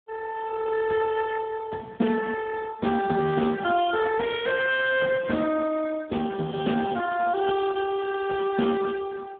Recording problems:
telephone audio; 170 Hz to 3.5 kHz, Speex

